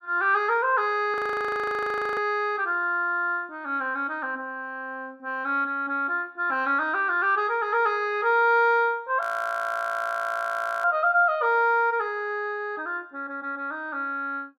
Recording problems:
audio freezing; at 1 s for 1 s and at 9 s for 1.5 s

